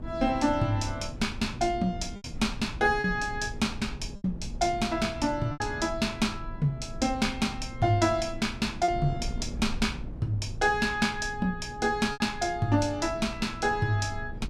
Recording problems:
mains hum; 60 Hz, harmonics up to 840 Hz, SNR 19 dB
wind on the microphone; below 130 Hz, SNR 13 dB
packet loss; 3% of the sound replaced, filled with repeated pitch periods

